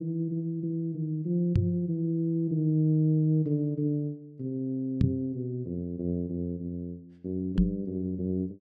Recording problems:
microphone bump; at 1.5 s, at 5 s and at 7.5 s; peak +9 dB vs average level

